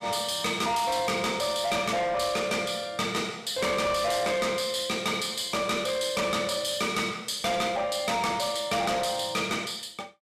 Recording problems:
distortion; soft clipping, signal-to-distortion ratio 8 dB

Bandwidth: 14.5 kHz